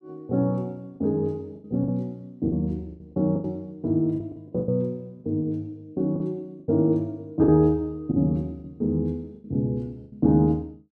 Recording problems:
lost packets; 9% of the sound replaced, filled with the last packet

